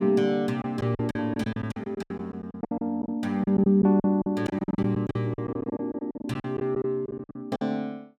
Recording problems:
lost packets; 18% of the sound replaced, filled with silence

